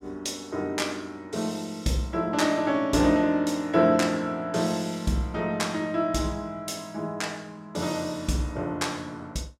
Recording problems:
none

